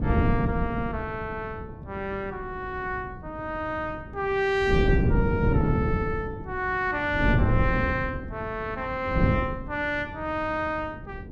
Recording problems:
wind noise; below 230 Hz, SNR -1 dB

